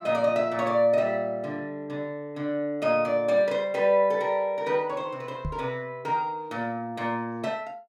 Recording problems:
knock on the microphone; at 5.5 s; peak -2 dB vs average level

